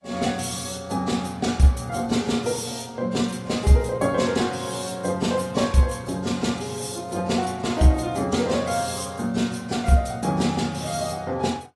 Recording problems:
lossy codec; AAC, log-spectral distance 5 dB, nothing above 11.3 kHz

